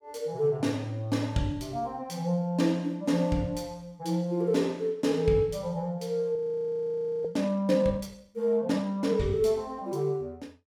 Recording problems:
audio freezing; at 6.5 s for 1 s

